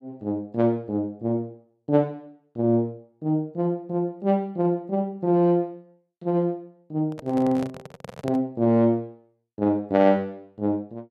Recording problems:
handling noise; from 7 to 8.5 s; peak -5 dB vs average level

